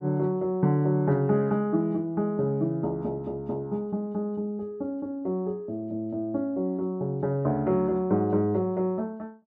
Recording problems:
none

